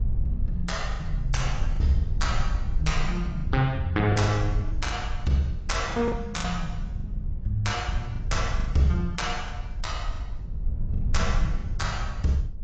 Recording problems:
lossy compression; AAC, log-spectral distance 2 dB, nothing above 7.3 kHz
low-frequency rumble; below 72 Hz, SNR 4 dB
lost packets; 7% of the sound replaced, filled with the last packet

